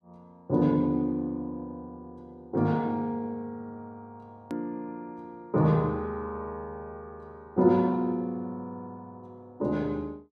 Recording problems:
hard cut with a click; at 4.5 s

